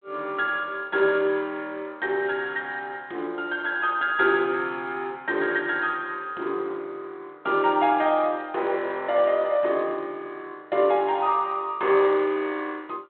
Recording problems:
telephone audio; 280 Hz to 3.8 kHz, G.726

